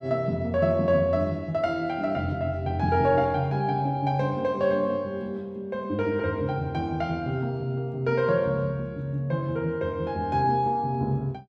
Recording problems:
none

